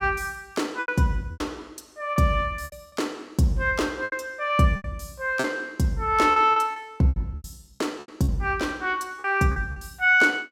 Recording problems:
packet loss; 11% of the sound replaced, filled with repeated pitch periods

